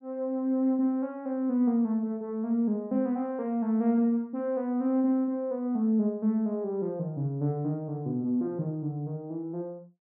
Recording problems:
none

